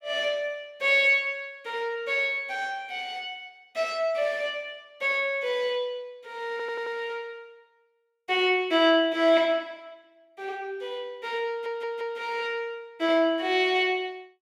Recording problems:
audio stuttering; at 6.5 s and at 11 s

